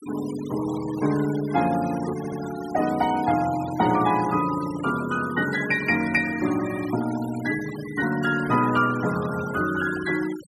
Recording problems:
denoising artefacts; signal-to-artefact ratio 15 dB
audio stuttering; at 2 s

